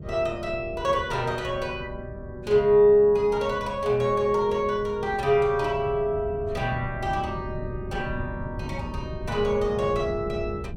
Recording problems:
wind noise; below 180 Hz, SNR 13 dB

